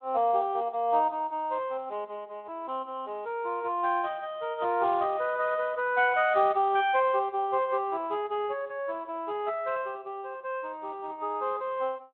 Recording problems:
telephone audio; 280 Hz to 3.6 kHz, Speex

